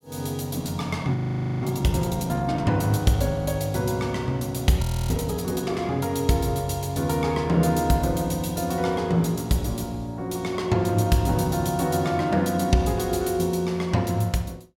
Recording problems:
audio freezing; at 1 s and at 5 s

